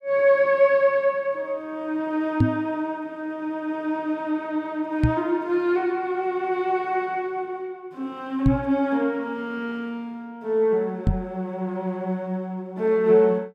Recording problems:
knock on the microphone; 4 times, first at 2.5 s; peak +8 dB vs average level

